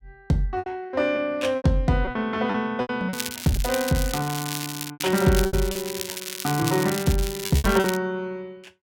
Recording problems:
packet loss; 11% of the sound replaced, filled with repeated pitch periods
crackling; from 3 to 8 s; loose cable, SNR 7 dB

